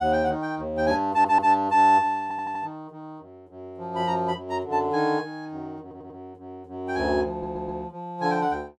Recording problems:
audio stuttering; 4 times, first at 1 s

